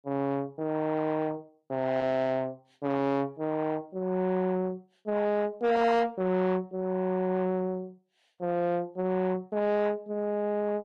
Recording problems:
lossy codec; AAC, log-spectral distance 2 dB
distortion; soft clipping, signal-to-distortion ratio 10 dB

